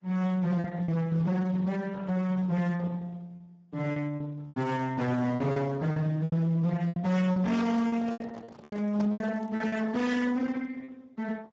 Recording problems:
codec artefacts; Opus, then Speex, log-spectral distance 3 dB, nothing above 17.1 kHz
distorted audio; hard clipping, uneven, signal-to-distortion ratio 6 dB
lost packets; 9% of the sound replaced, filled with repeated pitch periods
microphone handling noise; from 8 to 9.5 s; peak -9 dB vs average level

